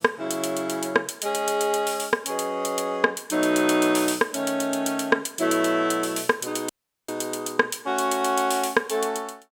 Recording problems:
audio cutting out; at 6.5 s

